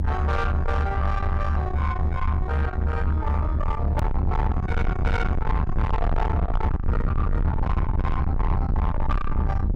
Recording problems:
distorted audio; soft clipping, signal-to-distortion ratio 6 dB
rumble; below 110 Hz, SNR -4 dB
hard cut with a click; at 4 s

